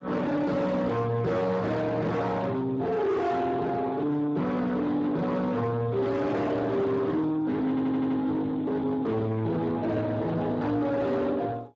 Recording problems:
codec artefacts; Speex, log-spectral distance 3 dB, nothing above 7.3 kHz
distortion; soft clipping, signal-to-distortion ratio 6 dB
audio stuttering; at 7.5 s

